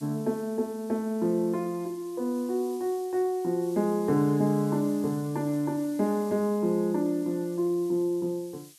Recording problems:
hiss; slope +6 dB per octave, SNR 22 dB

